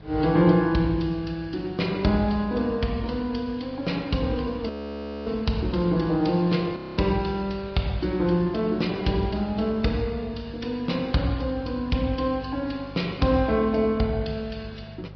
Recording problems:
low-pass filter; nothing above 5.2 kHz
lossy compression; MP3, log-spectral distance 2 dB
hum; 50 Hz, harmonics up to 450 Hz, SNR 20 dB
wind on the microphone; below 1.4 kHz, SNR 25 dB
audio freezing; at 4.5 s for 0.5 s and at 7 s

